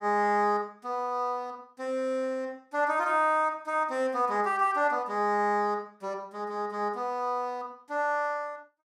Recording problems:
none

